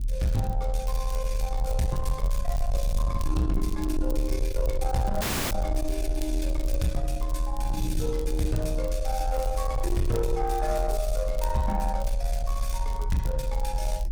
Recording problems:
distortion; soft clipping, signal-to-distortion ratio 11 dB
low-frequency rumble; below 48 Hz, strongest tone 38 Hz, SNR 0 dB
wind on the microphone; below 180 Hz, SNR 14 dB
crackle; vinyl, SNR 19 dB
dropout; at 5 s

